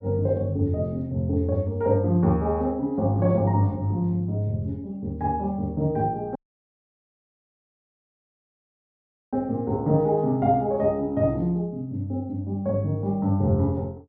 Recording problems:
dropout; at 6.5 s for 3 s

